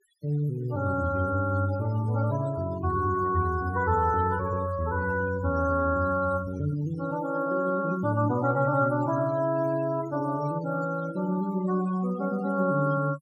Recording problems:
noise reduction artefacts; signal-to-artefact ratio 17 dB

